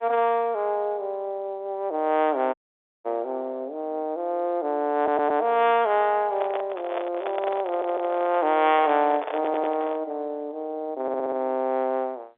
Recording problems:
telephone audio; 240 Hz to 3.7 kHz, G.711
dropout; at 2.5 s for 0.5 s
audio stuttering; 4 times, first at 5 s
handling noise; from 6.5 to 10 s; peak -1 dB vs average level

